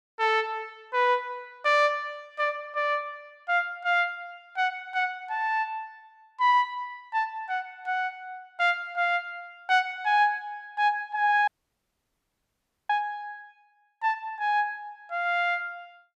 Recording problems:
dropout; at 11 s for 1.5 s

